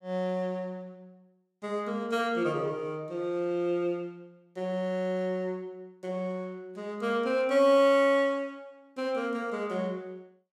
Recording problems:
none

